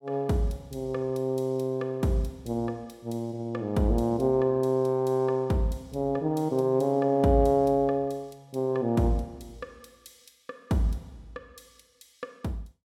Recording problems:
none

